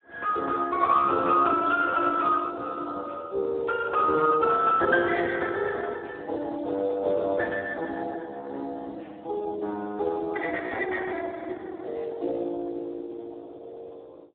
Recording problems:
phone line; 280 Hz to 2 kHz, Speex

